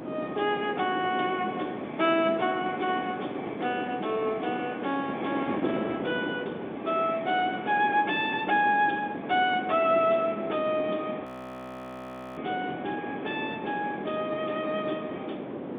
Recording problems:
phone line; 220 Hz to 3.6 kHz, G.711
wind noise; below 570 Hz, SNR 8 dB
audio freezing; at 11 s for 1 s

